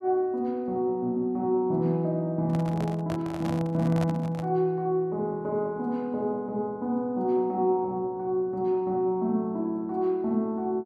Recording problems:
handling noise; from 2.5 to 4.5 s; peak -4 dB vs average level

